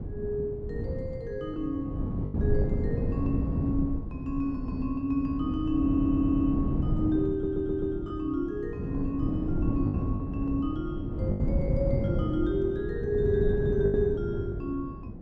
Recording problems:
wind noise; below 210 Hz, SNR 1 dB
lost packets; 4% of the sound replaced, filled with the last packet
audio stuttering; at 6 s and at 7.5 s

